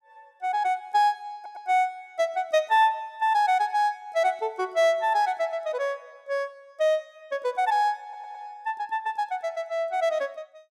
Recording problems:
audio stuttering; at 1.5 s and at 8 s

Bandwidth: 14.5 kHz